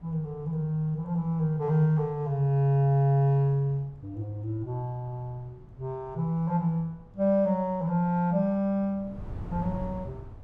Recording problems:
wind noise; below 180 Hz, SNR 19 dB

